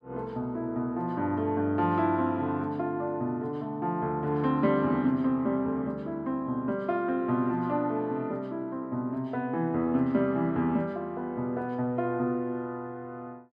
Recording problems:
none

